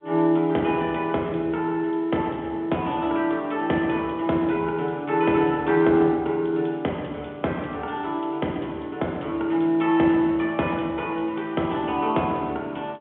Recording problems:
phone line; 130 Hz to 3.5 kHz, G.711

